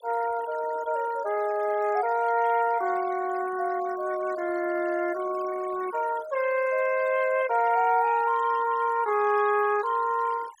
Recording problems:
denoising artefacts; signal-to-artefact ratio 18 dB

